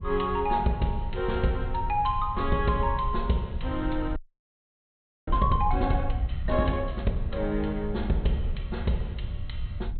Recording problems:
treble missing; nothing above 4.2 kHz
rumble; below 74 Hz, SNR 6 dB
audio freezing; at 4 s for 1 s

